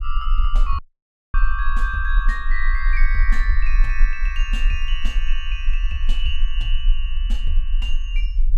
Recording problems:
low-frequency rumble; below 36 Hz, strongest tone 18 Hz, SNR -5 dB
dropout; at 1 s for 0.5 s

